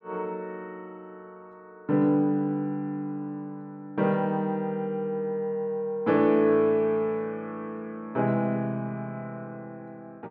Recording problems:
none

